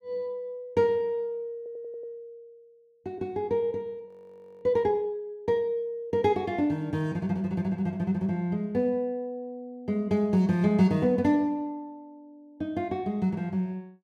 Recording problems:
audio stuttering; at 1.5 s
frozen audio; at 4 s for 0.5 s

